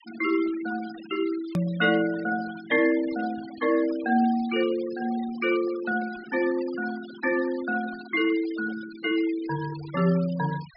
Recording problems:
low-pass filter; nothing above 5.5 kHz
noise reduction artefacts; signal-to-artefact ratio 18 dB
click at an edit; at 1.5 s

